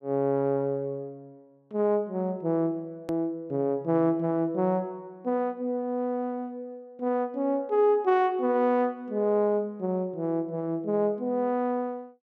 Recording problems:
click at an edit; at 3 s

